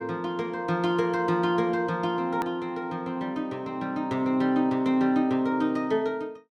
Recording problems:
hard cut with a click; at 2.5 s

